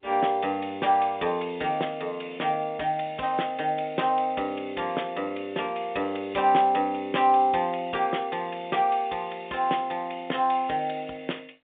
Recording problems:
telephone audio; 240 Hz to 3.7 kHz, G.711

